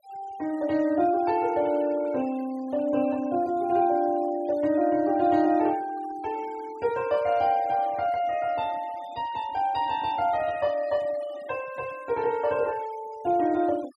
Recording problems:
denoising artefacts; signal-to-artefact ratio 23 dB

